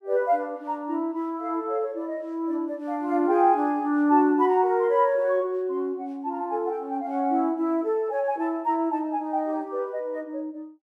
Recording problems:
none

